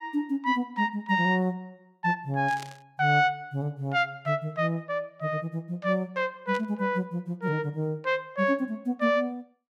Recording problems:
static burst; at 2.5 s and at 6.5 s; peak -10 dB vs average level

